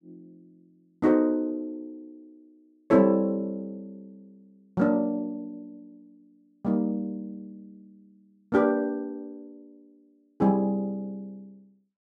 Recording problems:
none

